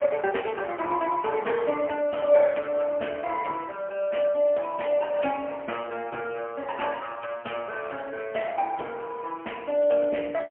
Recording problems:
telephone audio; 260 Hz to 3.2 kHz, AMR-NB, then MP3

